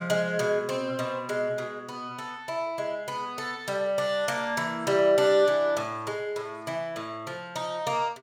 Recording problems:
none

